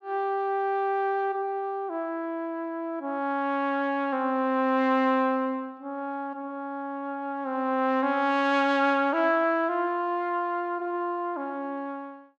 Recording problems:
none

